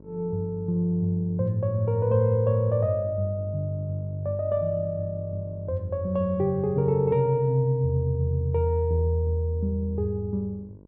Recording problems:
electrical hum; 50 Hz, harmonics up to 1 kHz, SNR 23 dB

